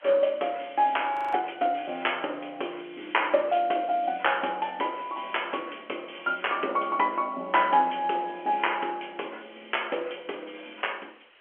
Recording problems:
telephone audio; 300 Hz to 3.3 kHz, G.711
hiss; SNR 27 dB
audio freezing; at 1 s

